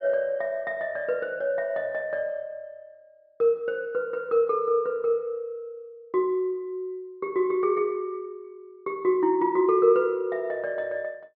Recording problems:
treble cut off; nothing above 5.5 kHz

